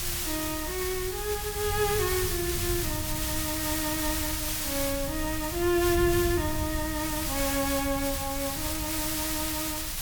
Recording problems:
background hiss; slope +2 dB per octave, SNR 0 dB
rumble; below 96 Hz, SNR 10 dB
wind noise; below 120 Hz, SNR 10 dB

